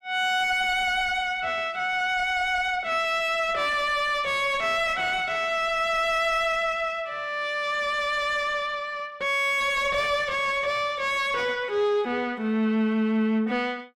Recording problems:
distorted audio; soft clipping, signal-to-distortion ratio 5 dB

